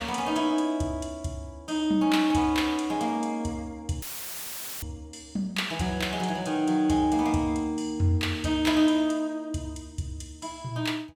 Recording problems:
audio cutting out; at 4 s for 1 s; filled with static

